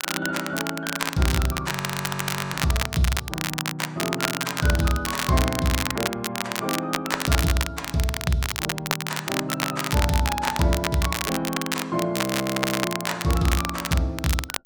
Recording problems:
crackling; vinyl, SNR 2 dB
frozen audio; at 1.5 s for 1 s and at 12 s for 0.5 s

